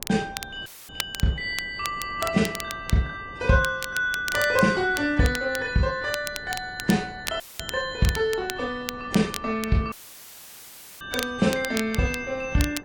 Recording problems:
lossy compression; AAC, log-spectral distance 2 dB
wind on the microphone; below 520 Hz, SNR 21 dB
crackle; vinyl, SNR 11 dB
dropout; at 0.5 s, at 7.5 s and at 10 s for 1 s; filled with static

